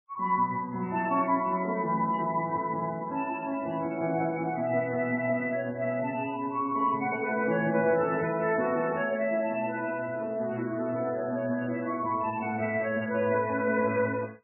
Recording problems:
lossy codec; MP3, then MP3, log-spectral distance 2 dB, nothing above 2.7 kHz

